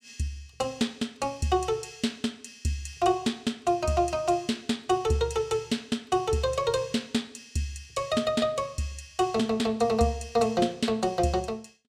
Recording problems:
none

